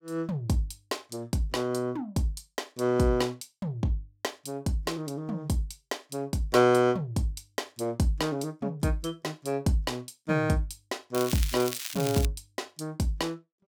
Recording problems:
crackle; from 11 to 12 s; loose cable, SNR 6 dB

